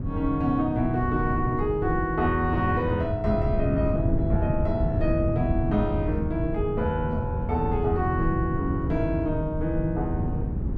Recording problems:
wind on the microphone; below 160 Hz, SNR 3 dB

